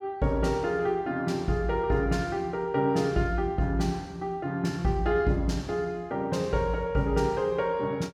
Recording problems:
none

